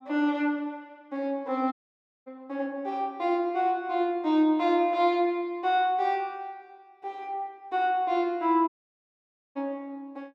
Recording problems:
audio cutting out; at 1.5 s for 0.5 s and at 8.5 s for 1 s

